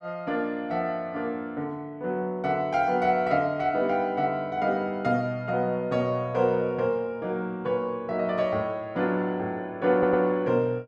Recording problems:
audio stuttering; at 10 s

